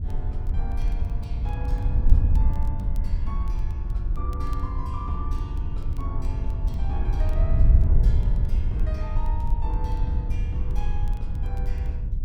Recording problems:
wind on the microphone; below 70 Hz, SNR -12 dB
crackling; vinyl, SNR 23 dB

